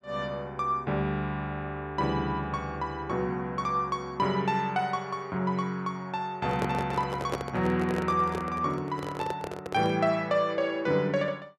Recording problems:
handling noise; from 6.5 to 10 s; peak +1 dB vs average level

